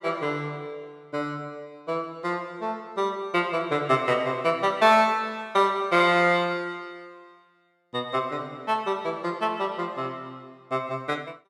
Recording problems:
none

